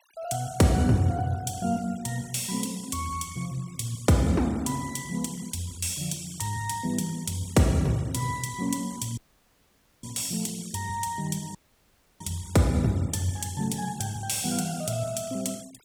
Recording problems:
denoising artefacts; signal-to-artefact ratio 21 dB
dropout; at 9 s for 1 s and at 12 s for 0.5 s

